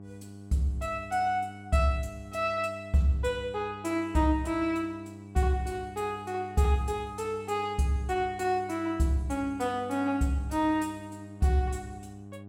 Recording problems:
hum; 50 Hz, harmonics up to 800 Hz, SNR 16 dB

